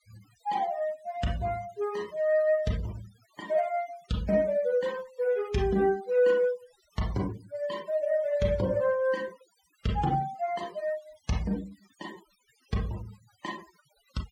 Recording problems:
noise reduction artefacts; signal-to-artefact ratio 20 dB

